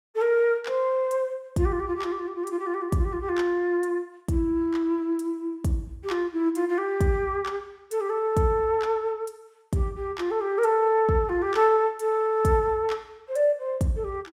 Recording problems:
none

